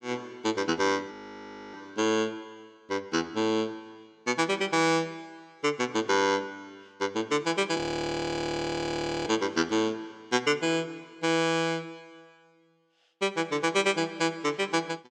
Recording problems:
audio freezing; at 1 s for 0.5 s and at 8 s for 1.5 s

